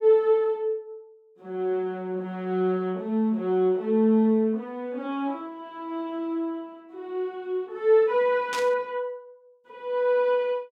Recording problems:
static burst; at 8.5 s; peak -3 dB vs average level

